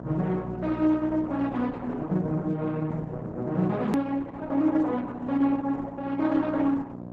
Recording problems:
codec artefacts; Opus, then Opus, log-spectral distance 3 dB, nothing above 13.1 kHz
electrical hum; 60 Hz, harmonics up to 1 kHz, SNR 12 dB
hard cut with a click; at 4 s

